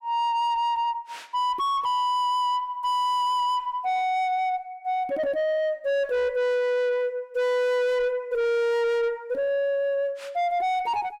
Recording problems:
distorted audio; soft clipping, signal-to-distortion ratio 5 dB

